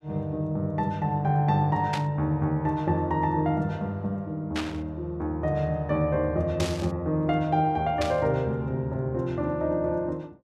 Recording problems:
burst of static; 4 times, first at 2 s; peak -2 dB vs average level

